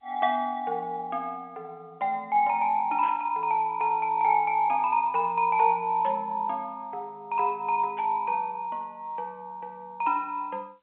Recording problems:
phone line; 280 Hz to 3.4 kHz, G.711
burst of static; at 3 s, at 6 s and at 8 s; peak -13 dB vs average level

